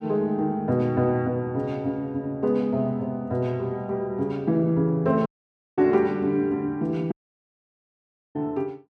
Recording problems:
dropout; at 5.5 s for 0.5 s and at 7 s for 1 s

